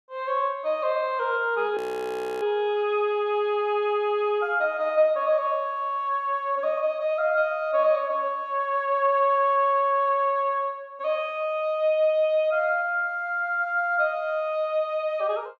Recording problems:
audio freezing; at 2 s for 0.5 s

